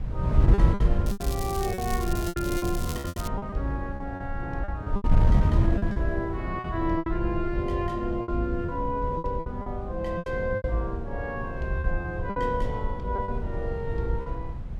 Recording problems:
rumble; below 100 Hz, SNR 9 dB
wind noise; below 110 Hz, SNR -1 dB
lost packets; 11% of the sound replaced, filled with repeated pitch periods
crackle; from 1 to 3.5 s; loose cable, SNR 8 dB

